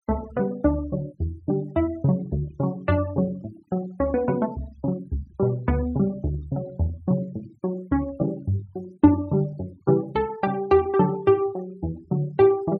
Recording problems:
noise reduction artefacts; signal-to-artefact ratio 25 dB

